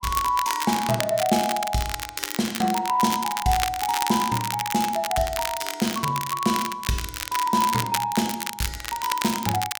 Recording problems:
crackling; vinyl, SNR 6 dB

